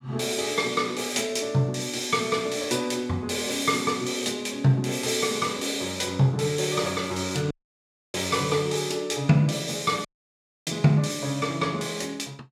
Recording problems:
audio cutting out; at 7.5 s for 0.5 s and at 10 s for 0.5 s

